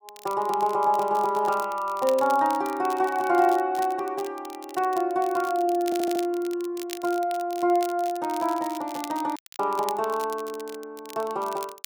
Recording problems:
crackle; vinyl, SNR 17 dB
audio stuttering; at 6 s
audio cutting out; at 9.5 s

